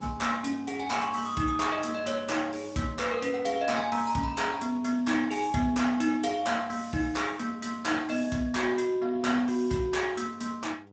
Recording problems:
lossy codec; Speex, log-spectral distance 5 dB, nothing above 7.8 kHz
electrical hum; 50 Hz, harmonics up to 1.4 kHz, SNR 24 dB

